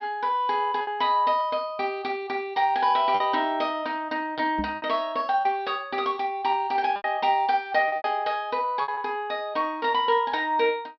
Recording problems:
low-pass filter; nothing above 5.5 kHz
packet loss; 5% of the sound replaced, filled with repeated pitch periods
microphone thump; at 4.5 s; peak -4 dB vs average level

